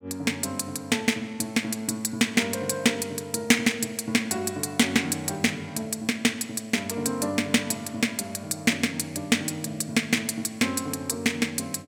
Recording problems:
none

